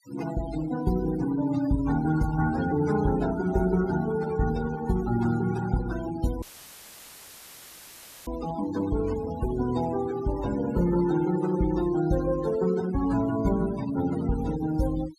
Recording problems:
denoising artefacts; signal-to-artefact ratio 12 dB
audio cutting out; at 6.5 s for 2 s; filled with static

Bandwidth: 14.5 kHz